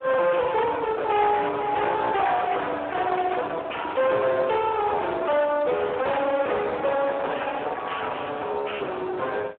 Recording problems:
phone line; 340 Hz to 3.4 kHz, Speex
distortion; soft clipping, signal-to-distortion ratio 7 dB

